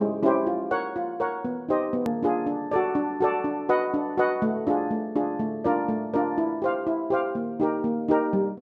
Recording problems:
edit click; at 2 s

